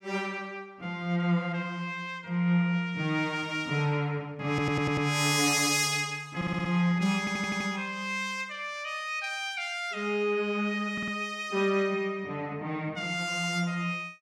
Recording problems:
stutter; 4 times, first at 4.5 s

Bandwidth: 16.5 kHz